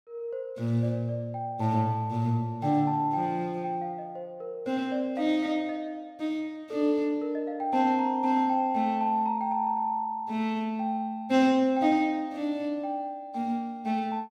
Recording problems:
none

